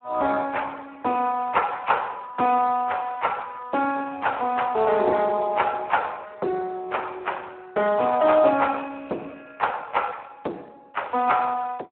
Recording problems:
telephone audio; 240 Hz to 3.1 kHz, Speex

